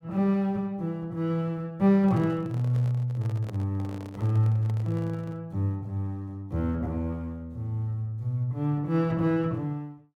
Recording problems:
handling noise; from 2 to 5.5 s; peak -10 dB vs average level

